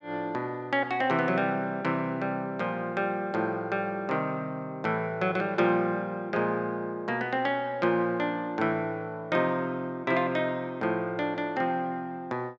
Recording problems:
none

